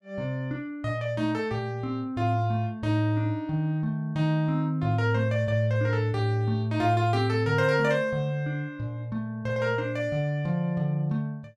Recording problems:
none

